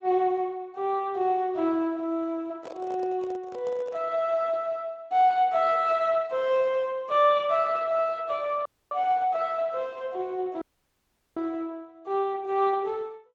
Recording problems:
lossy compression; Speex, log-spectral distance 2 dB
microphone handling noise; from 2.5 to 4 s; peak -10 dB vs average level
audio cutting out; at 8.5 s and at 11 s for 0.5 s

